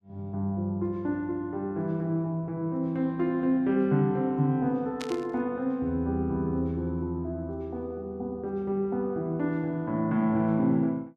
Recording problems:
burst of static; at 5 s; peak -5 dB vs average level

